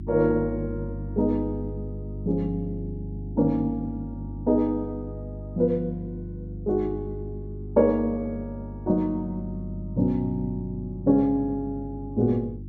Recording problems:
hum; 50 Hz, harmonics up to 350 Hz, SNR 10 dB

